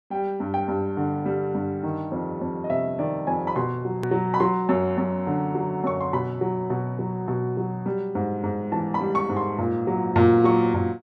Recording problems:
click at an edit; at 4 s

